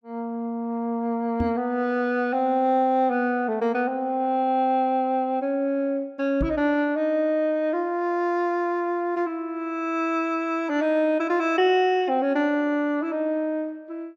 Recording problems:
knock on the microphone; at 1.5 s and at 6.5 s; peak 0 dB vs average level

